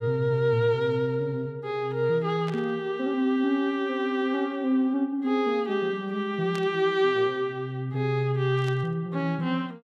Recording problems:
static burst; at 2.5 s, at 6.5 s and at 8.5 s; peak -10 dB vs average level

